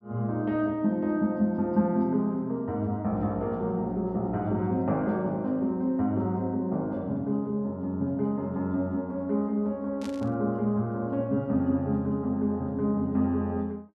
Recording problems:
static burst; at 10 s; peak -12 dB vs average level

